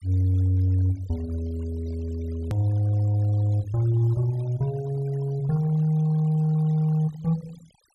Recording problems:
denoising artefacts; signal-to-artefact ratio 25 dB
hard cut with a click; at 2.5 s

